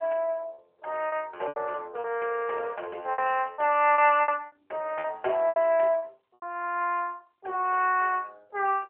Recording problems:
telephone audio; 340 Hz to 3.2 kHz, AMR-NB
lost packets; 9% of the sound replaced, filled with repeated pitch periods

